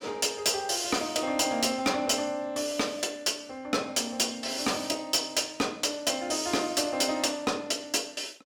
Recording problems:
distorted audio; hard clipping, signal-to-distortion ratio 11 dB

